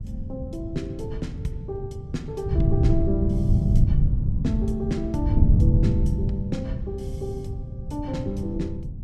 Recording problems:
wind noise; below 130 Hz, SNR -5 dB

